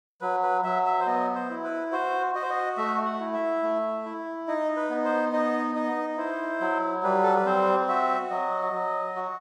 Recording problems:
none

